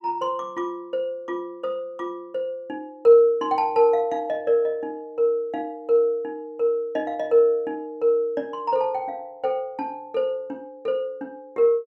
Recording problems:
none

